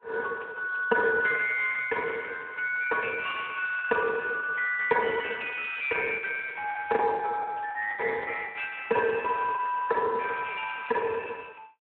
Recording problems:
telephone audio; 240 Hz to 3.5 kHz, Speex
lost packets; 8% of the sound replaced, filled with the last packet

